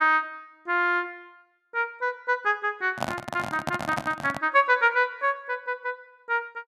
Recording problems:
handling noise; from 3 to 4.5 s; peak +2 dB vs average level

